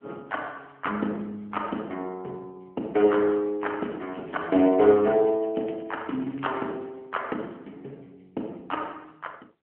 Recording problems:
phone line; 220 Hz to 3.1 kHz, AMR-NB
crackling; from 3.5 to 6.5 s; loose cable, SNR 29 dB

